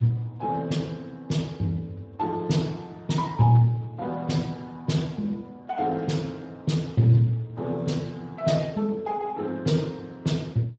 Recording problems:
codec artefacts; Speex, log-spectral distance 3 dB, nothing above 7.3 kHz

